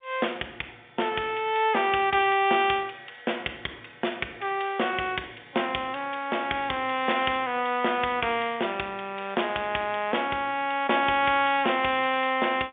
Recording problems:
phone line; 260 Hz to 3.5 kHz, G.711

